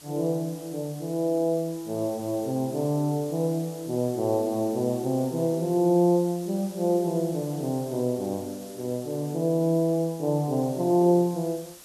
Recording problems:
background hiss; SNR 19 dB

